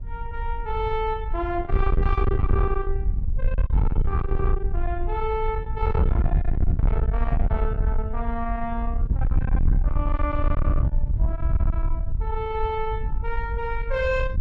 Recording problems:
distortion; soft clipping, signal-to-distortion ratio 12 dB
wind on the microphone; below 72 Hz, SNR -3 dB

